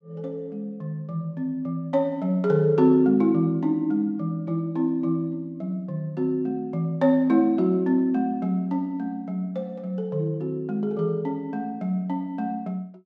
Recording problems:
none

